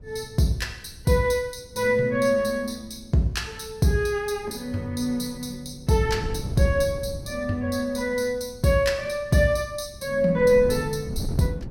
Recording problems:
wind noise; below 170 Hz, SNR 14 dB

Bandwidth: 16.5 kHz